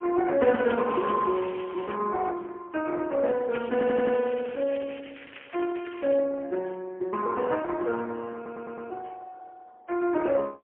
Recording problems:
telephone audio; 280 Hz to 3.3 kHz, AMR-NB, then MP3
crackling; from 0.5 to 2 s and from 3.5 to 6 s; loose cable, SNR 17 dB
audio stuttering; at 3.5 s and at 8.5 s

